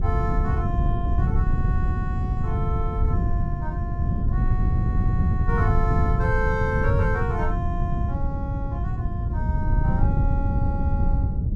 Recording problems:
electrical hum; 60 Hz, harmonics up to 300 Hz, SNR 10 dB
wind on the microphone; below 120 Hz, SNR -7 dB

